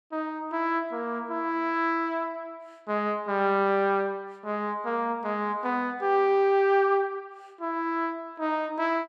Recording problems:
none

